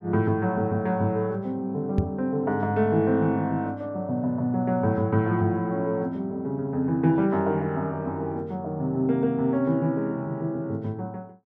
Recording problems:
knock on the microphone; at 2 s; peak +5 dB vs average level

